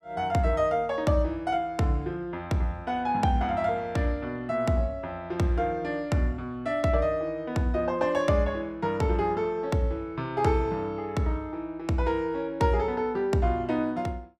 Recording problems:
none

